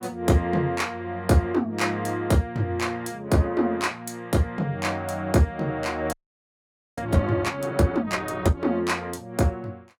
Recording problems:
frozen audio; at 6 s for 1 s

